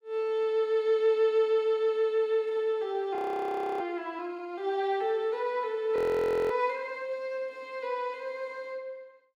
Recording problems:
frozen audio; at 3 s for 0.5 s and at 6 s for 0.5 s

